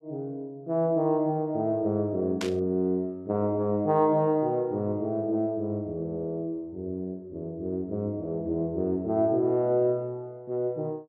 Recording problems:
static burst; at 2.5 s; peak -2 dB vs average level

